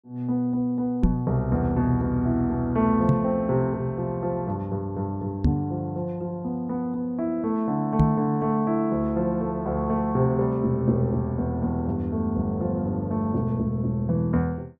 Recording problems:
knock on the microphone; 4 times, first at 1 s; peak +8 dB vs average level

